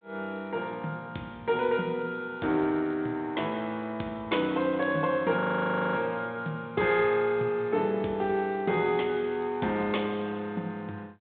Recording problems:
telephone audio; 150 Hz to 3.8 kHz, G.726
audio freezing; at 5.5 s for 0.5 s

